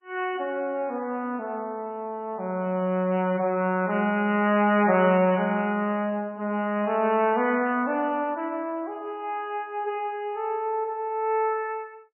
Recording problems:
lossy codec; MP3, log-spectral distance 2 dB, nothing above 2.5 kHz

